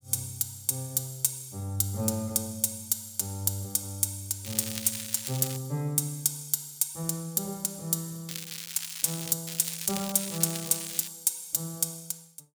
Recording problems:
crackle; from 4.5 to 5.5 s, from 8.5 to 9.5 s and from 9.5 to 11 s; loose cable, SNR 8 dB

